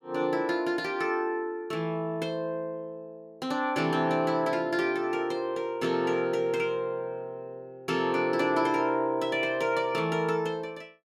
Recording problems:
none

